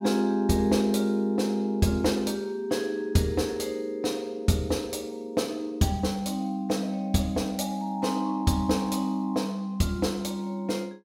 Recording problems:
none

